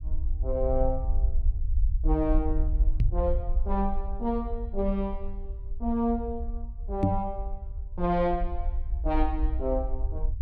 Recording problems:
rumble; below 56 Hz, SNR 1 dB
microphone thump; at 3 s and at 7 s; peak +9 dB vs average level

